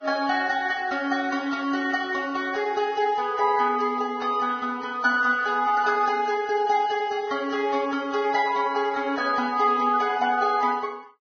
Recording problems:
lossy codec; Vorbis, log-spectral distance 3 dB, nothing above 6.3 kHz

